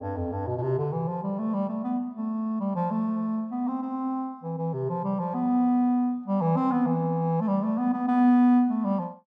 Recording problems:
none

